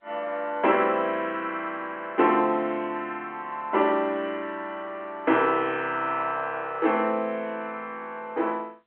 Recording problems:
phone line; 240 Hz to 3.2 kHz, G.711

